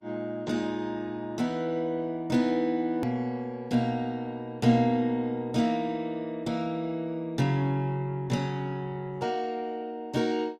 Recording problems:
lossy compression; Opus, log-spectral distance 2 dB, nothing above 16.1 kHz
click at an edit; at 3 s

